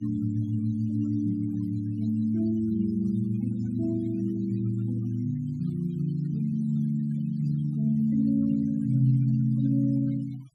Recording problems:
noise reduction artefacts; signal-to-artefact ratio 26 dB

